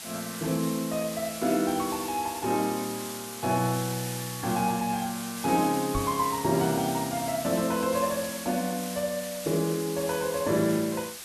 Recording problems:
hiss; slope +1 dB per octave, SNR 8 dB
knock on the microphone; at 6 s; peak -2 dB vs average level

